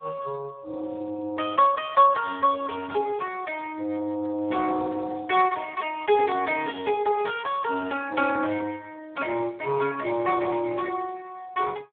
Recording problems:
phone line; 170 Hz to 3.3 kHz, Speex

